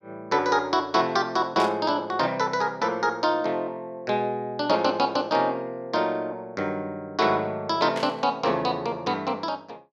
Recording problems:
static burst; at 1.5 s and at 8 s; peak -5 dB vs average level

